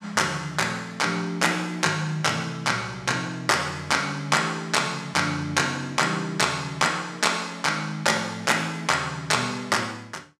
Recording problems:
none

